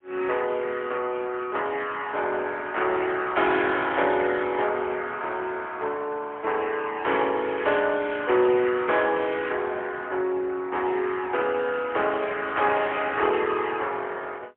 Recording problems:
telephone audio; 300 Hz to 3.3 kHz, AMR-NB, then MP3

